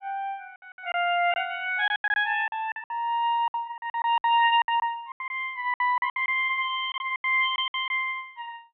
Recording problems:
low-pass filter; nothing above 3.7 kHz
packet loss; 14% of the sound replaced, filled with silence

